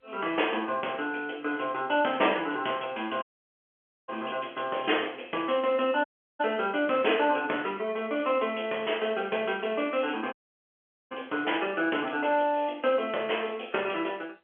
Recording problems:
telephone audio; 300 Hz to 3.3 kHz, G.711
audio cutting out; at 3 s for 1 s, at 6 s and at 10 s for 1 s

